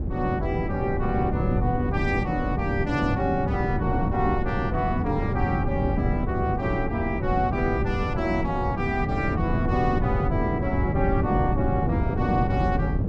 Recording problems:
wind on the microphone; below 220 Hz, SNR 0 dB

